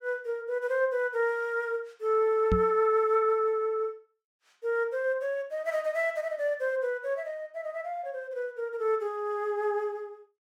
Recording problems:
knock on the microphone; at 2.5 s; peak +4 dB vs average level

